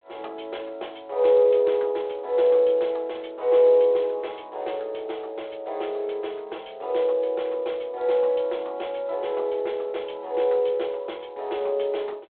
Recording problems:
telephone audio; 320 Hz to 3.8 kHz, G.726

